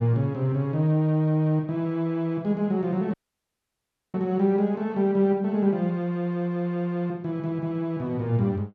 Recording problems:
audio cutting out; at 3 s for 1 s

